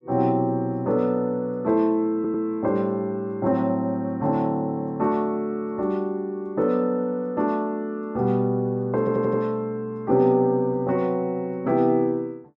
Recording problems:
audio stuttering; at 2 s and at 9 s

